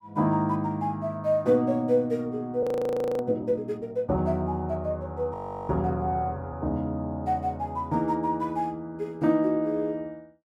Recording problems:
audio freezing; at 2.5 s for 0.5 s and at 5.5 s

